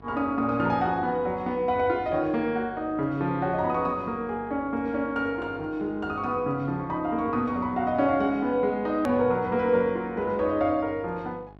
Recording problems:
electrical hum; 50 Hz, harmonics up to 1.5 kHz, SNR 24 dB
click at an edit; at 9 s

